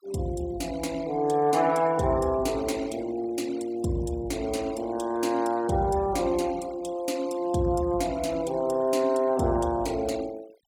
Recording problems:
noise reduction artefacts; signal-to-artefact ratio 20 dB

